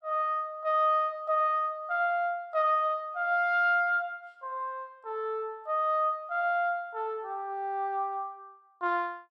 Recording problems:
none

